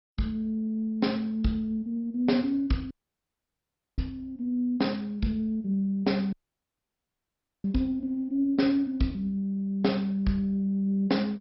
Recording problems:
lossy codec; MP2, log-spectral distance 2 dB, nothing above 5.5 kHz
audio cutting out; at 3 s for 1 s and at 6.5 s for 1.5 s

